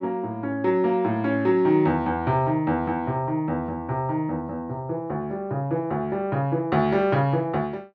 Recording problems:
none

